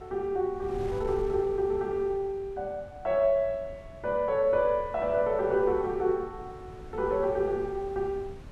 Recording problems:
wind on the microphone; below 210 Hz, SNR 17 dB

